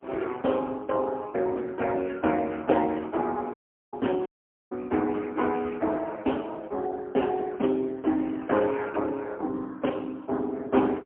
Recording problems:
phone line; 240 Hz to 3.3 kHz, AMR-NB, then MP3
dropout; at 3.5 s and at 4.5 s

